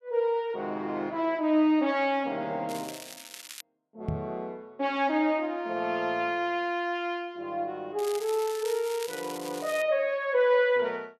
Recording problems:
crackling; at 2.5 s and from 8 to 10 s; loose cable, SNR 14 dB
microphone bump; at 4 s; peak +1 dB vs average level

